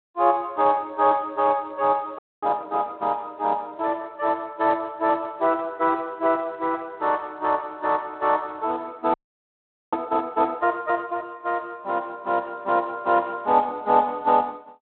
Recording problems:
telephone audio; 220 Hz to 3.9 kHz, Speex
audio freezing; at 2 s and at 9 s for 1 s

